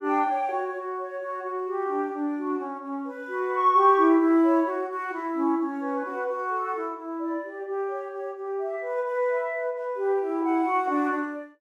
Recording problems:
none

